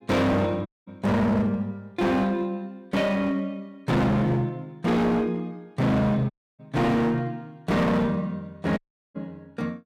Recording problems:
distorted audio; hard clipping, uneven, signal-to-distortion ratio 6 dB
audio cutting out; at 0.5 s, at 6.5 s and at 9 s

